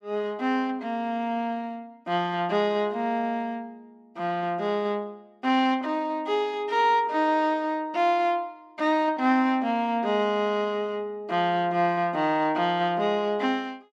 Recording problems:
none

